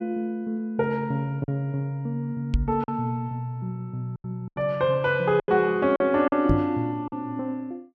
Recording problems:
packet loss; 6% of the sound replaced, filled with silence
microphone thump; at 2.5 s and at 6.5 s; peak +6 dB vs average level

